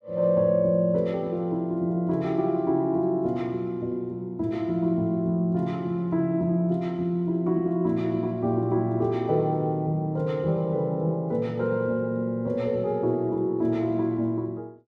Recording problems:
none

